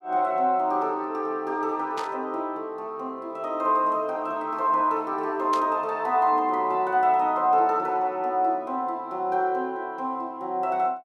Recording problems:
static burst; at 2 s and at 5.5 s; peak -7 dB vs average level

